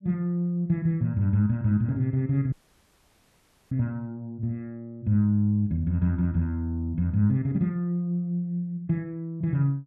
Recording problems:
audio cutting out; at 2.5 s for 1 s

